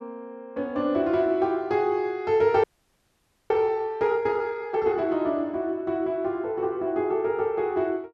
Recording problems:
audio freezing; at 2.5 s for 1 s

